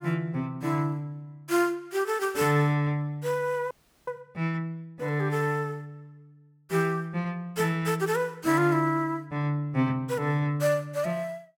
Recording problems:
audio freezing; at 3.5 s

